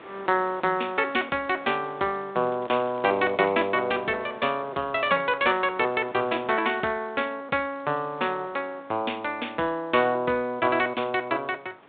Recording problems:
phone line; 190 Hz to 3.8 kHz, G.726
wind noise; below 1.7 kHz, SNR 23 dB
crackle; from 2.5 to 3.5 s; loose cable, SNR 26 dB

